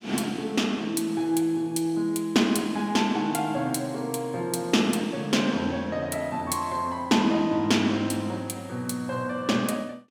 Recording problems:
none

